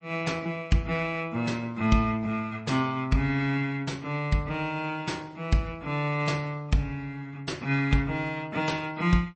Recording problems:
lossy compression; MP3, log-spectral distance 2 dB, nothing above 8.2 kHz

